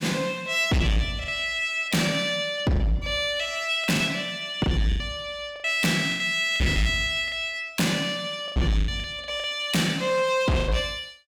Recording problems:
distorted audio; soft clipping, signal-to-distortion ratio 8 dB
packet loss; 8% of the sound replaced, filled with the last packet

